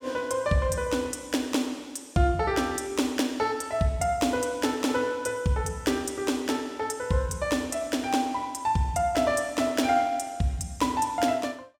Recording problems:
none

